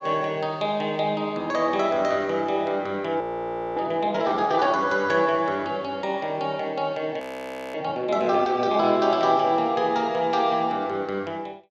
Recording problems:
audio freezing; at 3 s for 0.5 s and at 7 s for 0.5 s

